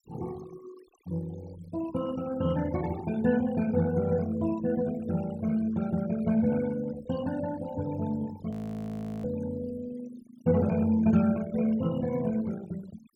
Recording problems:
denoising artefacts; signal-to-artefact ratio 17 dB
frozen audio; at 8.5 s for 0.5 s

